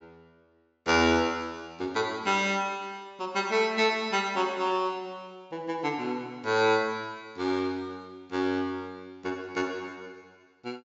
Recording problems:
treble cut off; nothing above 8 kHz

